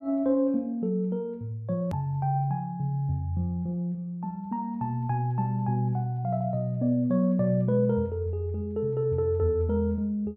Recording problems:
hard cut with a click; at 2 s

